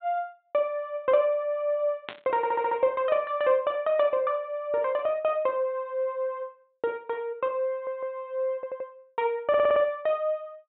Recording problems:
treble cut off; nothing above 4 kHz
burst of static; at 2 s; peak -4 dB vs average level
stutter; 4 times, first at 2.5 s

